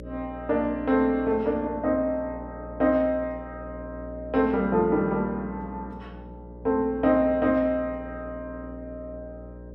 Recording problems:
hum; 60 Hz, harmonics up to 600 Hz, SNR 16 dB

